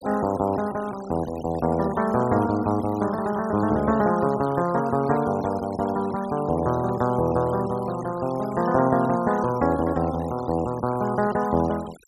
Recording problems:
denoising artefacts; signal-to-artefact ratio 19 dB

